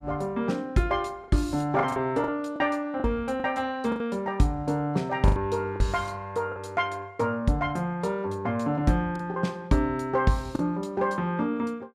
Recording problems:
lost packets; 5% of the sound replaced, filled with the last packet

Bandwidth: 15 kHz